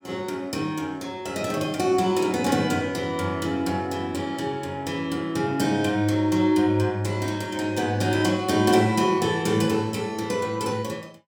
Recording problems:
none

